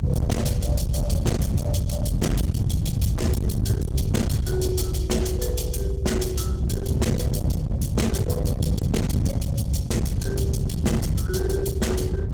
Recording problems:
lossy compression; Opus, log-spectral distance 3 dB, nothing above 19 kHz
distorted audio; hard clipping, signal-to-distortion ratio 7 dB
rumble; below 170 Hz, SNR -3 dB

